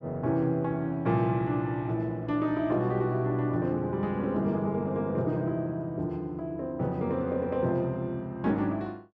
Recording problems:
none

